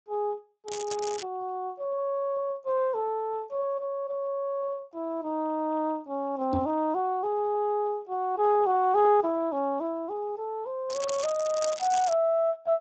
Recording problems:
lossy codec; Speex, log-spectral distance 3 dB
crackling; at 0.5 s and from 11 to 12 s; loose cable, SNR 11 dB
microphone thump; at 6.5 s; peak +3 dB vs average level

